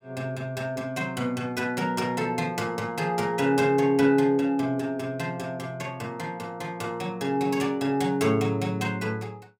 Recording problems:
none

